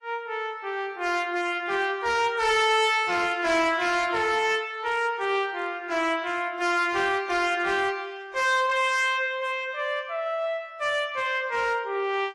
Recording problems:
codec artefacts; AAC, then AAC, log-spectral distance 2 dB, nothing above 11.3 kHz
distortion; hard clipping, signal-to-distortion ratio 10 dB

